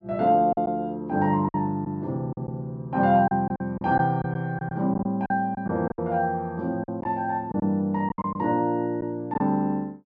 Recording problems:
packet loss; 8% of the sound replaced, filled with silence

